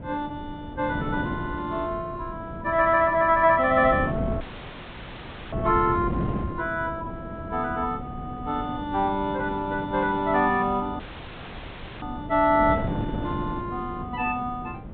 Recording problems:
low-pass filter; nothing above 4 kHz
wind on the microphone; below 310 Hz, SNR 9 dB
dropout; at 4.5 s for 1 s and at 11 s for 1 s

